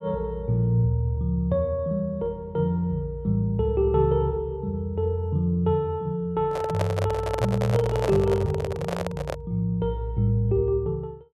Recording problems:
microphone handling noise; from 6.5 to 9.5 s; peak +1 dB vs average level

